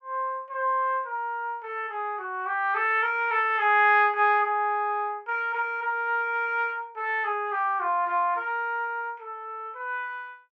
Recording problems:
none

